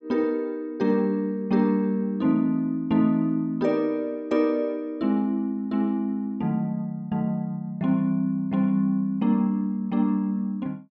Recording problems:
none

